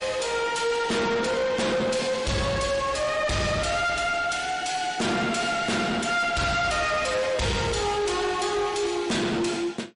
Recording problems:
lossy codec; MP3, log-spectral distance 4 dB, nothing above 10.4 kHz
distortion; soft clipping, signal-to-distortion ratio 6 dB

